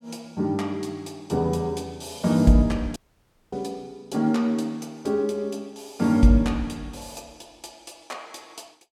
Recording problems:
audio cutting out; at 3 s for 0.5 s

